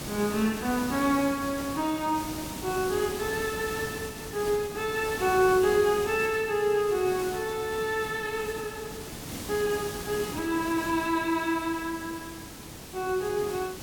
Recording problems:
background hiss; SNR 10 dB

